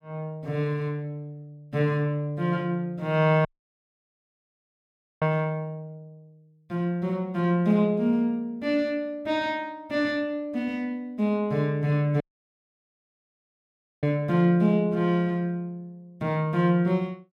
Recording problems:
dropout; at 3.5 s for 2 s and at 12 s for 2 s

